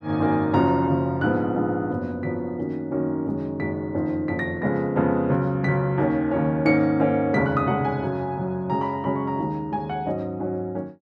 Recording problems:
none

